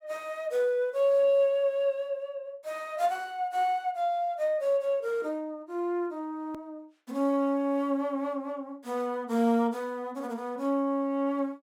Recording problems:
click at an edit; at 6.5 s

